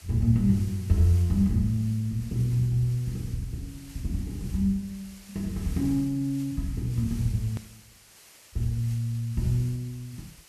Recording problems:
background hiss; slope 0 dB per octave, SNR 22 dB
click at an edit; at 7.5 s

